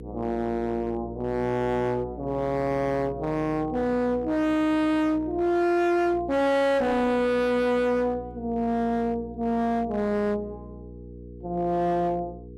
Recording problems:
distortion; hard clipping, uneven, signal-to-distortion ratio 7 dB
mains hum; 60 Hz, harmonics up to 480 Hz, SNR 16 dB

